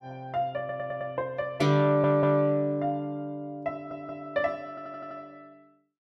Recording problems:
audio stuttering; 4 times, first at 0.5 s

